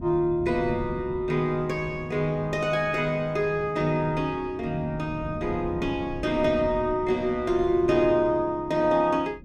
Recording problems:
wind on the microphone; below 220 Hz, SNR 14 dB

